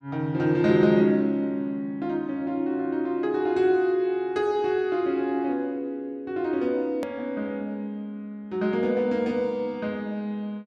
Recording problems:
click at an edit; at 7 s

